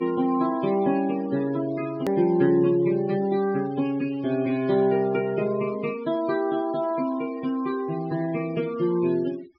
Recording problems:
treble missing; nothing above 5.5 kHz
noise reduction artefacts; signal-to-artefact ratio 20 dB
hard cut with a click; at 2 s

